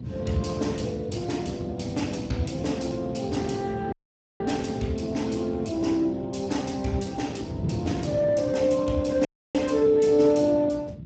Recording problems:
codec artefacts; Speex, log-spectral distance 5 dB, nothing above 7.8 kHz
wind noise; below 200 Hz, SNR 11 dB
audio cutting out; at 4 s and at 9.5 s

